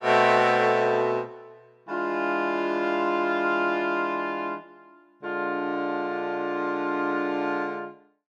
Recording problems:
none

